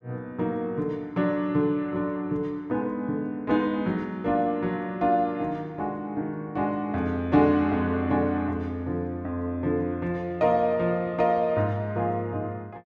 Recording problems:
none

